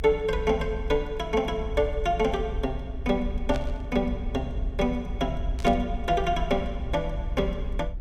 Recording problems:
rumble; below 60 Hz, SNR 6 dB
burst of static; at 3.5 s and at 5.5 s; peak -7 dB vs average level

